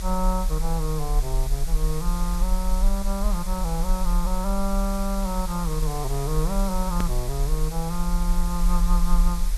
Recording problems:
background hiss; slope 0 dB per octave, SNR 9 dB
low-frequency rumble; below 38 Hz, strongest tone 36 Hz, SNR -1 dB
edit click; at 7 s

